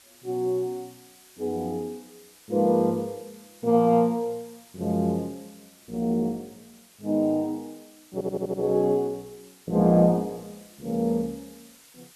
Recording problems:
background hiss; slope +1 dB per octave, SNR 26 dB
stutter; at 8 s

